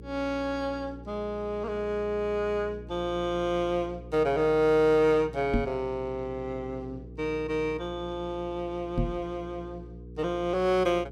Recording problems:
hum; 60 Hz, harmonics up to 480 Hz, SNR 16 dB
microphone thump; at 5.5 s and at 9 s; peak +4 dB vs average level

